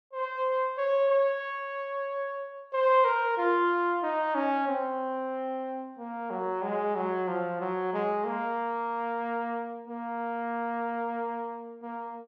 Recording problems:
none

